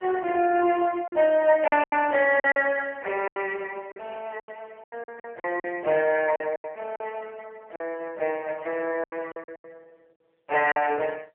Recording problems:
phone line; 320 Hz to 3.1 kHz, AMR-NB
packet loss; 11% of the sound replaced, filled with silence

